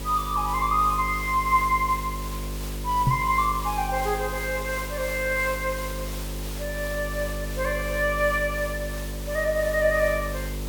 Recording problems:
electrical hum; 50 Hz, harmonics up to 600 Hz, SNR 9 dB
background hiss; slope -1 dB per octave, SNR 12 dB
microphone bump; at 3 s; peak +6 dB vs average level

